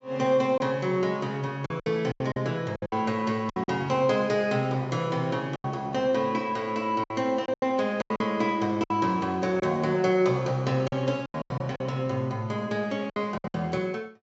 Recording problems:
treble missing; nothing above 8 kHz
lost packets; 10% of the sound replaced, filled with silence

